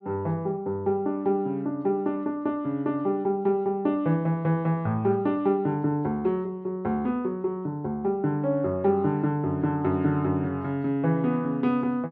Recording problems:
none

